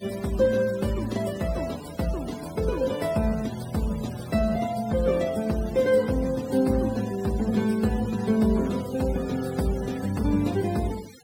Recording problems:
denoising artefacts; signal-to-artefact ratio 18 dB

